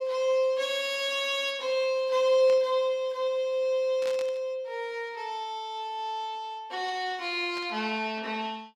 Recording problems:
burst of static; at 2.5 s, at 4 s and at 7.5 s; peak -9 dB vs average level

